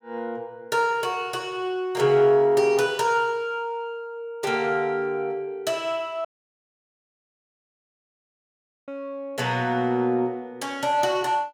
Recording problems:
dropout; at 6.5 s for 2.5 s

